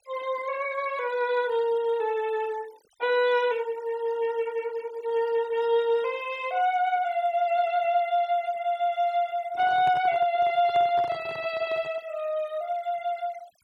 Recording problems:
noise reduction artefacts; signal-to-artefact ratio 22 dB
microphone handling noise; from 9.5 to 12 s; peak -8 dB vs average level

